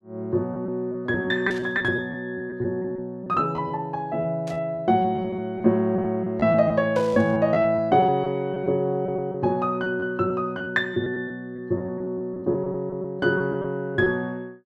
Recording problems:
lost packets; 11% of the sound replaced, filled with repeated pitch periods
burst of static; at 1.5 s, at 4.5 s and at 7 s; peak -13 dB vs average level

